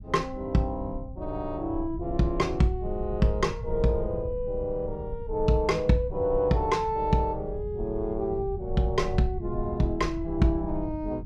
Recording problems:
rumble; below 90 Hz, SNR 10 dB

